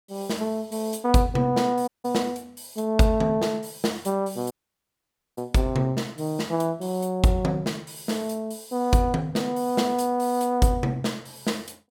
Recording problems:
dropout; at 2 s and at 4.5 s for 1 s

